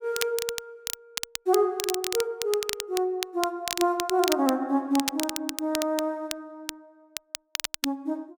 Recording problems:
crackle; vinyl, SNR 5 dB

